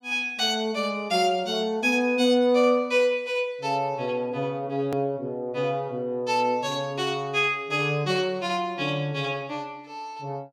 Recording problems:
edit click; at 5 s

